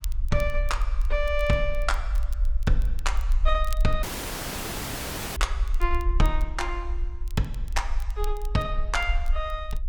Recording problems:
low-frequency rumble; below 48 Hz, SNR 0 dB
crackle; vinyl, SNR 21 dB
dropout; at 4 s for 1.5 s

